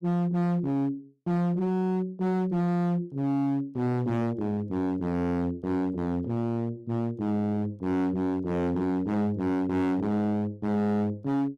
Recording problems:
distorted audio; hard clipping, signal-to-distortion ratio 6 dB

